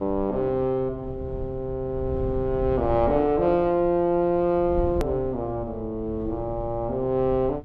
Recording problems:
low-frequency rumble; below 120 Hz, SNR 13 dB
edit click; at 5 s

